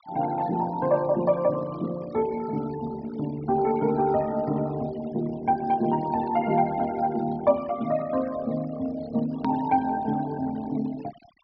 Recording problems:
treble cut off; nothing above 5.5 kHz
noise reduction artefacts; signal-to-artefact ratio 19 dB
click at an edit; at 9.5 s

